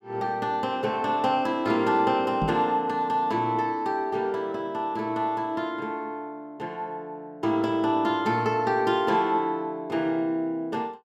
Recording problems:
microphone bump; at 2.5 s; peak 0 dB vs average level

